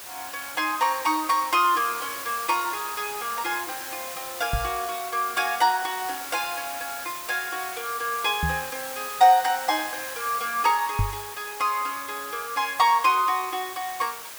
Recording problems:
background hiss; slope 0 dB per octave, SNR 10 dB
microphone thump; at 4.5 s, at 8.5 s and at 11 s; peak +3 dB vs average level

